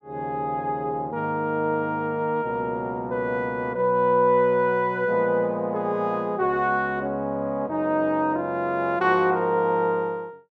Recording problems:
none

